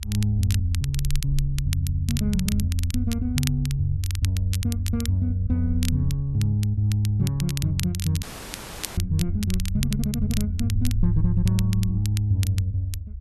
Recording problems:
low-frequency rumble; below 72 Hz, SNR 9 dB
crackling; vinyl, SNR 12 dB
dropout; at 8 s for 0.5 s

